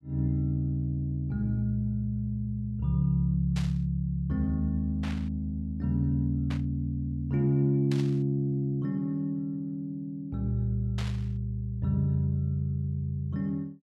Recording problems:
burst of static; 5 times, first at 3.5 s; peak -7 dB vs average level

